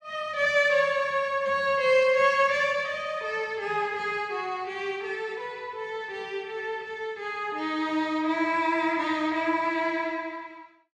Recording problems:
none

